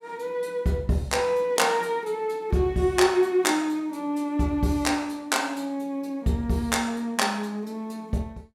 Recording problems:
none

